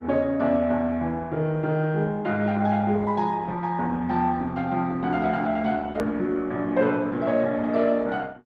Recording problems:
lossy compression; Opus, log-spectral distance 2 dB, nothing above 13.1 kHz
hard cut with a click; at 6 s

